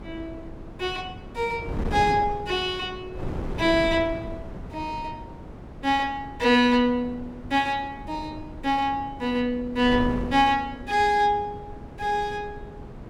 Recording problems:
wind on the microphone; below 360 Hz, SNR 13 dB

